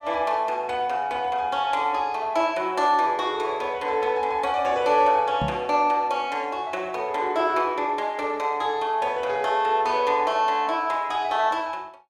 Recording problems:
microphone bump; at 5.5 s; peak -2 dB vs average level

